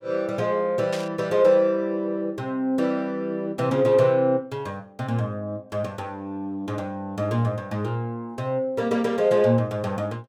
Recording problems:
burst of static; at 1 s; peak -6 dB vs average level

